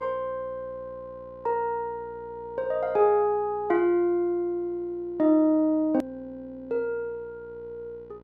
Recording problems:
hum; 60 Hz, harmonics up to 2 kHz, SNR 26 dB
hard cut with a click; at 6 s

